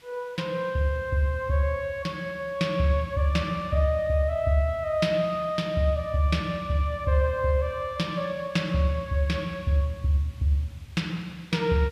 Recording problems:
hiss; SNR 28 dB

